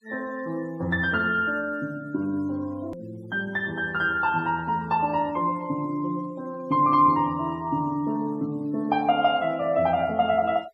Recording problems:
noise reduction artefacts; signal-to-artefact ratio 28 dB
click at an edit; at 3 s

